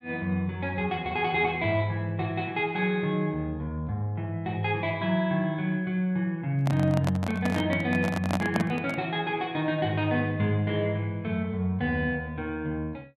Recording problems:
handling noise; from 6.5 to 9 s; peak +2 dB vs average level

